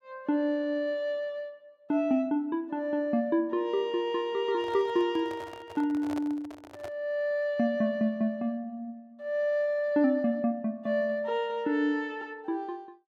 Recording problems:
microphone handling noise; from 4.5 to 7 s; peak -7 dB vs average level

